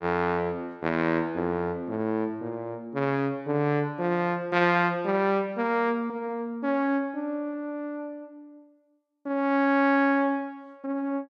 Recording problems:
none

